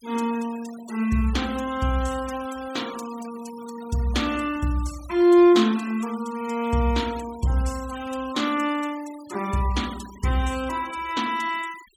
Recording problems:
noise reduction artefacts; signal-to-artefact ratio 18 dB

